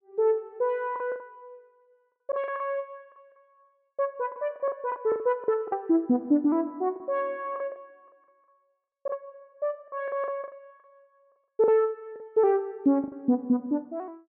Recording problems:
lost packets; 11% of the sound replaced, filled with the last packet

